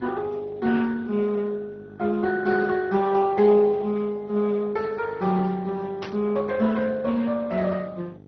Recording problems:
lossy compression; Speex, then MP2, log-spectral distance 3 dB, nothing above 5.8 kHz
hum; 50 Hz, harmonics up to 900 Hz, SNR 23 dB
static burst; at 6 s; peak -8 dB vs average level

